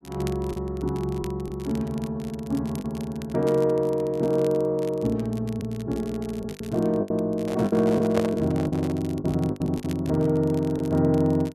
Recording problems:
crackle; vinyl, SNR 23 dB
packet loss; 6% of the sound replaced, filled with the last packet
handling noise; from 7.5 to 9 s; peak +1 dB vs average level

